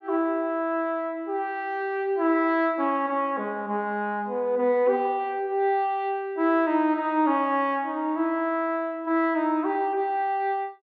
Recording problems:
none

